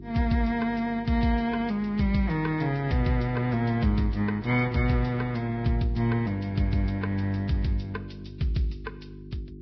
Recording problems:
lossy compression; Vorbis, log-spectral distance 3 dB, nothing above 5.2 kHz
hum; 50 Hz, harmonics up to 400 Hz, SNR 17 dB

